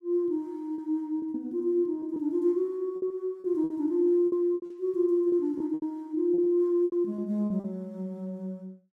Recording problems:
packet loss; 10% of the sound replaced, filled with repeated pitch periods

